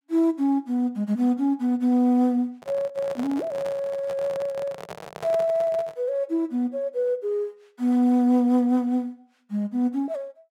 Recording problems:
handling noise; from 2.5 to 6 s; peak -7 dB vs average level

